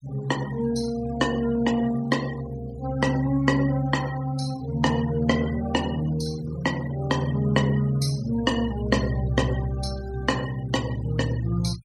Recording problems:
denoising artefacts; signal-to-artefact ratio 18 dB

